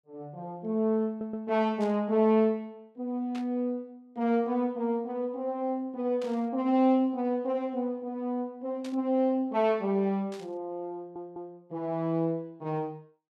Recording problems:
stutter; at 1 s and at 11 s
burst of static; 5 times, first at 2 s; peak -12 dB vs average level

